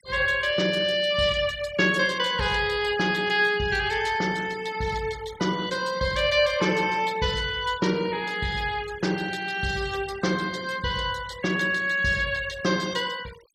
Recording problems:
denoising artefacts; signal-to-artefact ratio 18 dB

